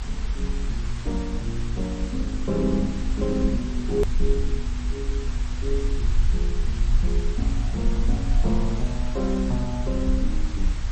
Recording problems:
lossy codec; MP3, log-spectral distance 2 dB, nothing above 13.1 kHz
electrical hum; 60 Hz, harmonics up to 1.6 kHz, SNR 28 dB
hiss; slope -2 dB per octave, SNR 11 dB
low-frequency rumble; below 52 Hz, SNR 0 dB
hard cut with a click; at 4 s

